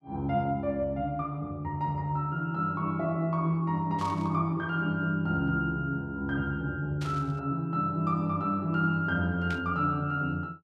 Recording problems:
static burst; at 4 s, at 7 s and at 9.5 s; peak -9 dB vs average level

